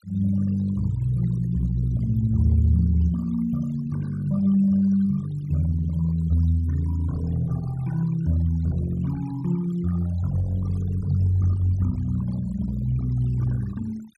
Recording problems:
denoising artefacts; signal-to-artefact ratio 23 dB

